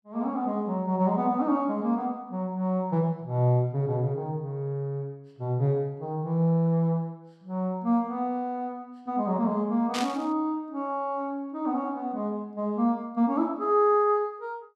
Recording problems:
burst of static; at 10 s; peak -1 dB vs average level

